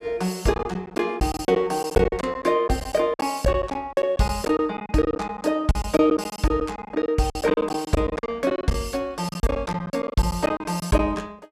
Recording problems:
packet loss; 15% of the sound replaced, filled with silence

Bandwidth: 14 kHz